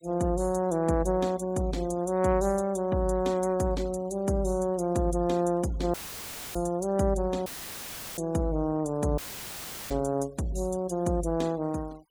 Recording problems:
denoising artefacts; signal-to-artefact ratio 25 dB
audio cutting out; at 6 s for 0.5 s, at 7.5 s for 0.5 s and at 9 s for 0.5 s; filled with static

